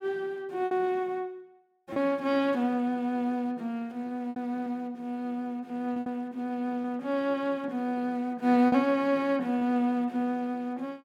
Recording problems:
packet loss; 4% of the sound replaced, filled with repeated pitch periods

